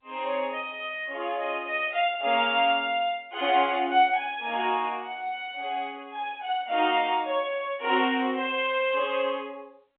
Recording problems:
telephone audio; 240 Hz to 3.4 kHz, G.711

